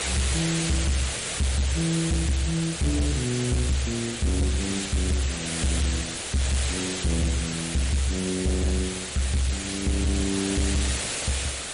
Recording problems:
lossy codec; MP3, log-spectral distance 14 dB, nothing above 10.4 kHz
distortion; hard clipping, signal-to-distortion ratio 11 dB
background hiss; SNR 3 dB

